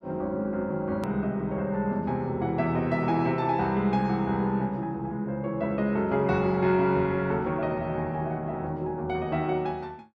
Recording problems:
edit click; at 1 s

